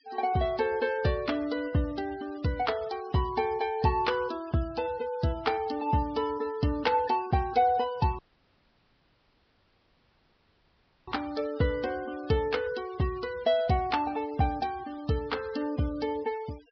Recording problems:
treble missing; nothing above 5.5 kHz
denoising artefacts; signal-to-artefact ratio 22 dB
dropout; at 8 s for 3 s

